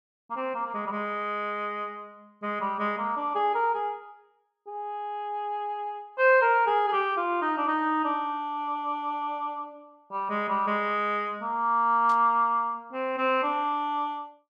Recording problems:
burst of static; at 12 s; peak -15 dB vs average level

